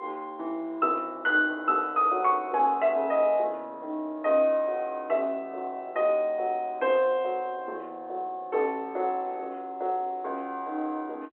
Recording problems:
phone line; 280 Hz to 3.2 kHz, G.711

